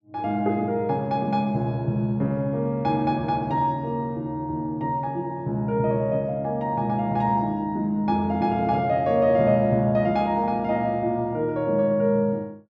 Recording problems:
none

